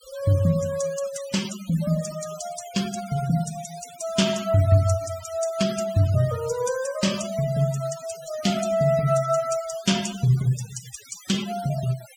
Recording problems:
noise reduction artefacts; signal-to-artefact ratio 14 dB

